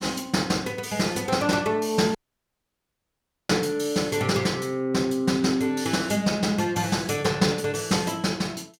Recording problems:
dropout; at 2 s for 1.5 s

